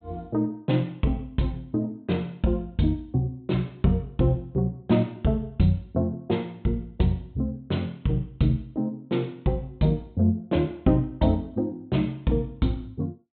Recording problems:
treble cut off; nothing above 4 kHz

